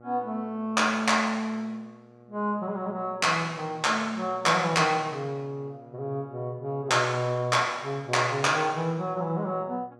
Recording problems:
hum; 60 Hz, harmonics up to 1.4 kHz, SNR 24 dB

